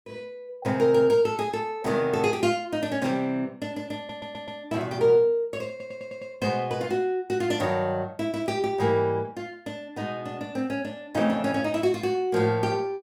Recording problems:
audio stuttering; at 4 s and at 5.5 s

